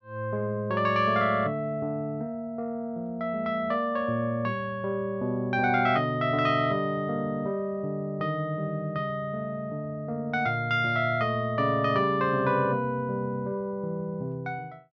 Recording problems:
none

